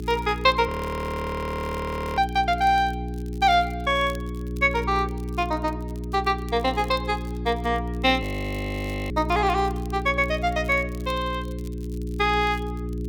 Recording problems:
hum; 60 Hz, harmonics up to 420 Hz, SNR 7 dB
crackle; vinyl, SNR 26 dB
frozen audio; at 0.5 s for 1.5 s and at 8 s for 1 s

